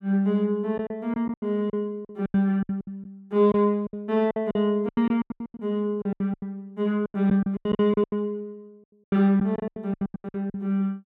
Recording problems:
packet loss; 19% of the sound replaced, filled with silence

